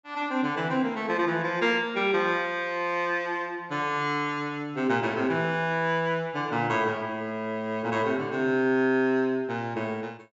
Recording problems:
treble missing; nothing above 8 kHz

